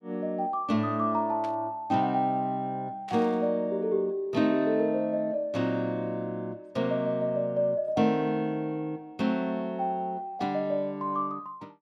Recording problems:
burst of static; at 1.5 s and at 3 s; peak -13 dB vs average level

